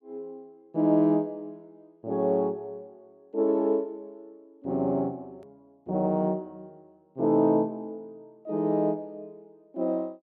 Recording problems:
click at an edit; at 5.5 s

